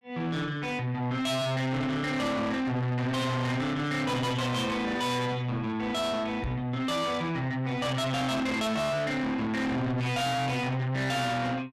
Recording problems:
distortion; soft clipping, signal-to-distortion ratio 7 dB
knock on the microphone; at 6.5 s; peak 0 dB vs average level

